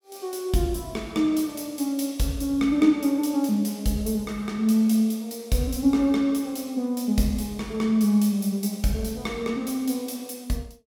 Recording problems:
none

